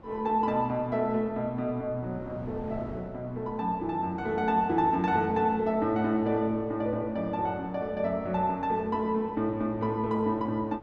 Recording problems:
wind on the microphone; below 580 Hz, SNR 20 dB

